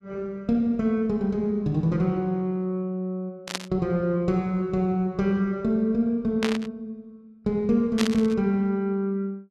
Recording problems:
burst of static; at 3.5 s, at 6.5 s and at 8 s; peak +2 dB vs average level

